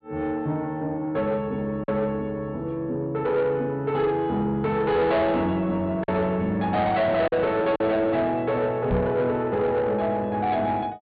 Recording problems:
treble missing; nothing above 4.6 kHz
distortion; soft clipping, signal-to-distortion ratio 10 dB
packet loss; 1.5% of the sound replaced, filled with silence
microphone bump; at 9 s; peak +3 dB vs average level

